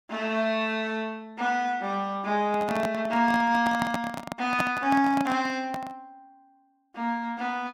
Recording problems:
microphone handling noise; from 2.5 to 6 s; peak +2 dB vs average level

